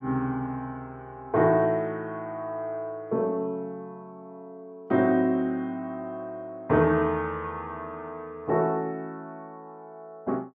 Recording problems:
none

